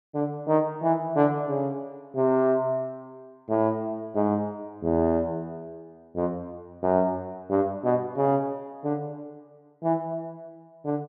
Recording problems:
none

